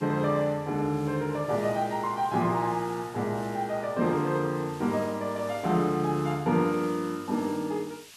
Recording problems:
hiss; SNR 21 dB

